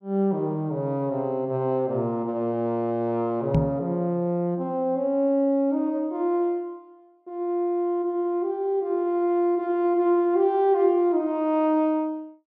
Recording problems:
knock on the microphone; at 3.5 s; peak +5 dB vs average level

